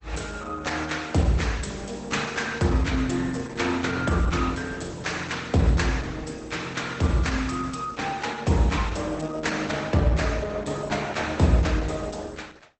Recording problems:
codec artefacts; Opus, log-spectral distance 5 dB, nothing above 8.2 kHz

